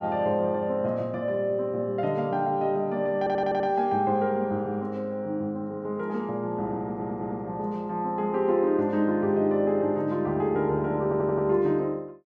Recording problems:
audio stuttering; at 3 s, at 7 s and at 11 s

